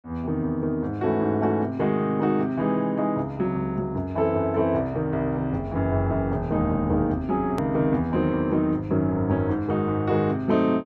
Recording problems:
hard cut with a click; at 7.5 s

